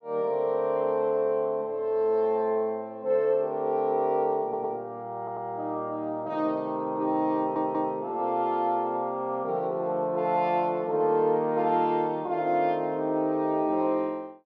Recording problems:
audio stuttering; at 4.5 s, at 5 s and at 7.5 s

